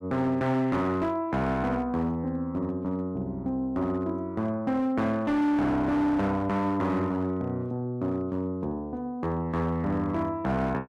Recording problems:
distorted audio; hard clipping, signal-to-distortion ratio 12 dB

